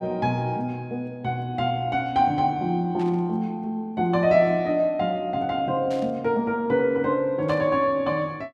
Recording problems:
static burst; at 3 s, at 6 s and at 7.5 s; peak -14 dB vs average level

